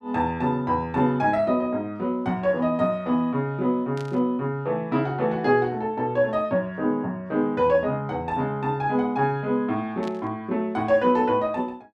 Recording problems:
static burst; at 4 s and at 10 s; peak -14 dB vs average level

